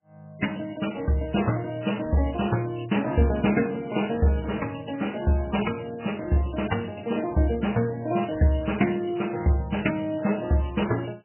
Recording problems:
lossy compression; MP3, log-spectral distance 7 dB, nothing above 3 kHz

